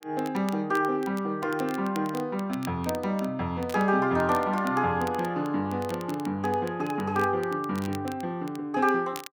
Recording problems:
crackling; vinyl, SNR 20 dB

